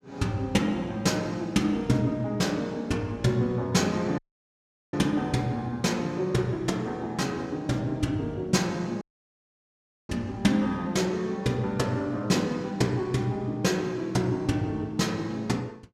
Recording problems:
audio cutting out; at 4 s for 1 s and at 9 s for 1 s

